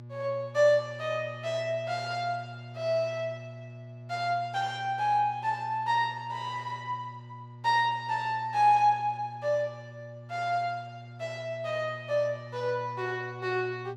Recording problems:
hum; 60 Hz, harmonics up to 600 Hz, SNR 16 dB

